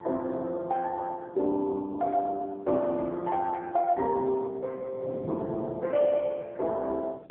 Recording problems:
telephone audio; 260 Hz to 2.3 kHz, AMR-NB
wind noise; below 370 Hz, SNR 17 dB

